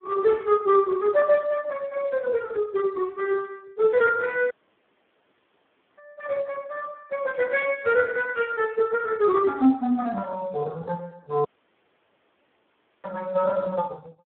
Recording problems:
phone line; 190 Hz to 3.7 kHz, Speex
dropout; at 4.5 s for 1.5 s and at 11 s for 1.5 s

